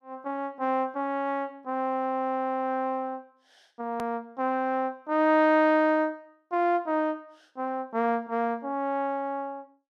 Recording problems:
click at an edit; at 4 s

